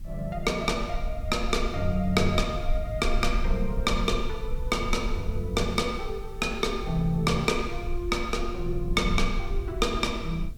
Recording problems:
hiss; SNR 30 dB
low-frequency rumble; below 52 Hz, strongest tone 20 Hz, SNR 7 dB

